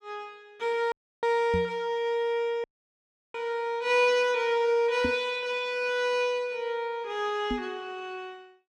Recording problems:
audio cutting out; at 1 s and at 2.5 s for 0.5 s
knock on the microphone; at 1.5 s, at 5 s and at 7.5 s; peak 0 dB vs average level

